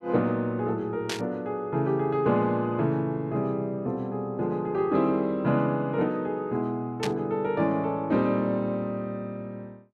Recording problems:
static burst; at 1 s and at 7 s; peak 0 dB vs average level

